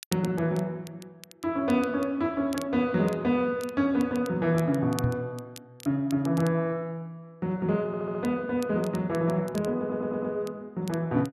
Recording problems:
crackling; vinyl, SNR 20 dB
microphone thump; at 5 s; peak +1 dB vs average level
stutter; at 8 s and at 10 s

